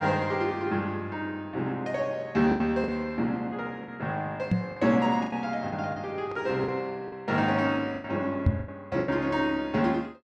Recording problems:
packet loss; 7% of the sound replaced, filled with the last packet
knock on the microphone; at 4.5 s and at 8.5 s; peak +9 dB vs average level

